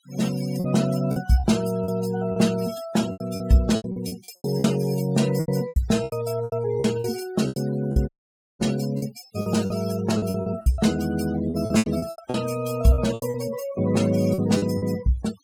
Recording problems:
denoising artefacts; signal-to-artefact ratio 16 dB
packet loss; 14% of the sound replaced, filled with repeated pitch periods
dropout; at 8 s for 0.5 s

